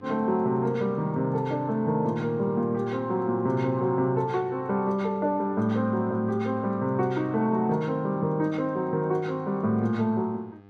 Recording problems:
hum; 50 Hz, harmonics up to 2.1 kHz, SNR 25 dB

